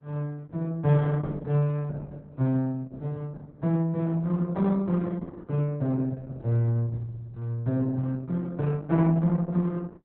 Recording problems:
codec artefacts; Opus, log-spectral distance 2 dB, nothing above 3.7 kHz

